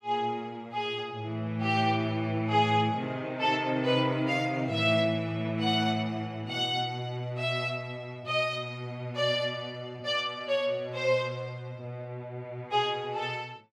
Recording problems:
none

